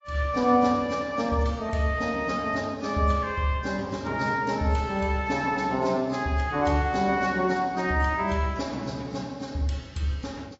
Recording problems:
lossy compression; AAC, log-spectral distance 3 dB, nothing above 7.6 kHz

